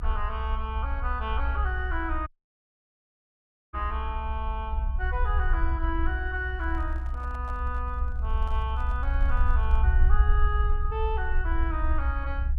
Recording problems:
rumble; below 64 Hz, SNR -4 dB
dropout; at 2.5 s for 1.5 s
handling noise; from 6.5 to 10 s; peak -11 dB vs average level

